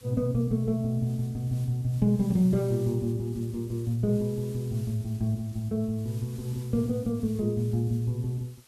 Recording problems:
hiss; slope 0 dB per octave, SNR 24 dB

